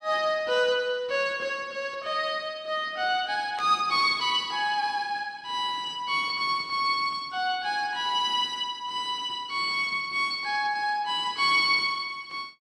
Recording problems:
static burst; at 3.5 s; peak -11 dB vs average level

